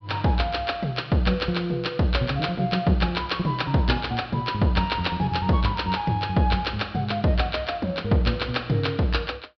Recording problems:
low-pass filter; nothing above 5.5 kHz

